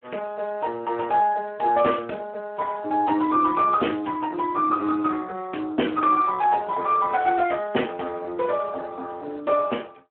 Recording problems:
phone line; 240 Hz to 2.8 kHz, Speex

